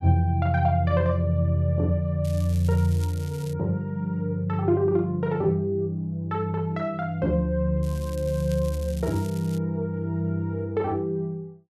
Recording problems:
crackling; from 2 to 3.5 s and from 8 to 9.5 s; loose cable, SNR 21 dB

